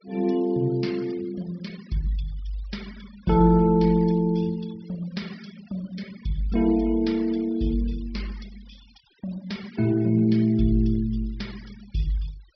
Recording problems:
treble missing; nothing above 5.5 kHz
noise reduction artefacts; signal-to-artefact ratio 23 dB

